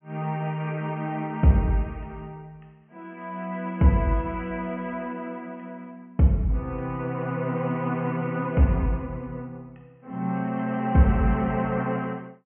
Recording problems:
low-pass filter; nothing above 3 kHz

